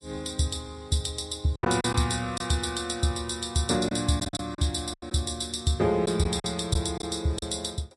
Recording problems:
lossy compression; MP3, log-spectral distance 6 dB, nothing above 11 kHz
packet loss; 6% of the sound replaced, filled with silence

